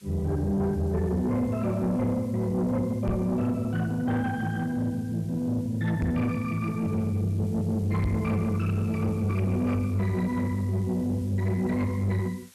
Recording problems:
distorted audio; soft clipping, signal-to-distortion ratio 11 dB
hiss; slope +1 dB per octave, SNR 27 dB
knock on the microphone; at 3 s, at 6 s and at 8 s; peak +3 dB vs average level

